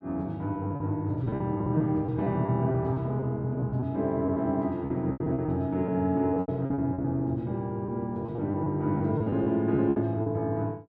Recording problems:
packet loss; 11% of the sound replaced, filled with repeated pitch periods

